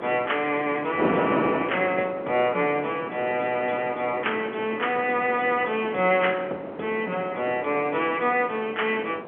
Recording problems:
phone line; 260 Hz to 3.2 kHz, G.711
wind noise; below 740 Hz, SNR 8 dB

